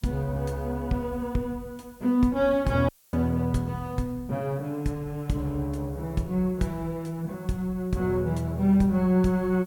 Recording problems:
background hiss; slope +1 dB per octave, SNR 29 dB
audio cutting out; at 3 s

